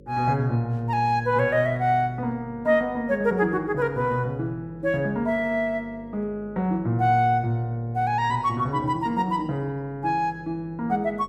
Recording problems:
electrical hum; 50 Hz, harmonics up to 550 Hz, SNR 22 dB

